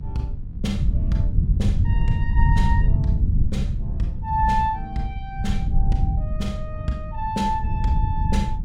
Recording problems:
hum; 50 Hz, harmonics up to 750 Hz, SNR 16 dB
low-frequency rumble; below 98 Hz, SNR -4 dB

